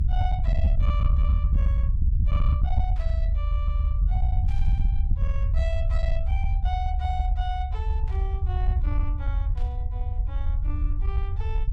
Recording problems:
distorted audio; soft clipping, signal-to-distortion ratio 11 dB
rumble; below 72 Hz, SNR -12 dB
static burst; 4 times, first at 3 s; peak -9 dB vs average level

